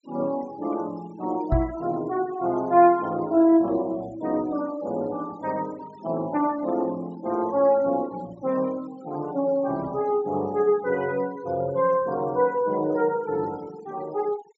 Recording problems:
low-pass filter; nothing above 8 kHz
noise reduction artefacts; signal-to-artefact ratio 23 dB
knock on the microphone; at 1.5 s; peak +4 dB vs average level

